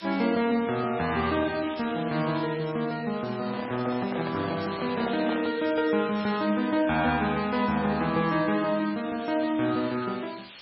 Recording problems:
codec artefacts; MP3, log-spectral distance 18 dB, nothing above 4.8 kHz
background hiss; SNR 16 dB
microphone handling noise; from 3.5 to 5.5 s; peak -4 dB vs average level

